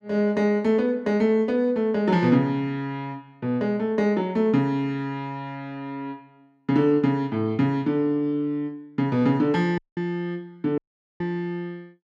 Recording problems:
audio cutting out; at 10 s and at 11 s

